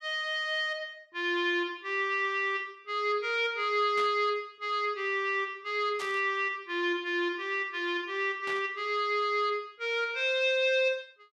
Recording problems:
static burst; at 4 s, at 6 s and at 8.5 s; peak -8 dB vs average level

